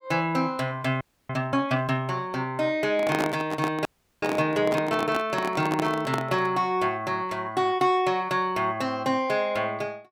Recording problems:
audio freezing; at 1 s and at 4 s
handling noise; from 3 to 6.5 s; peak +2 dB vs average level

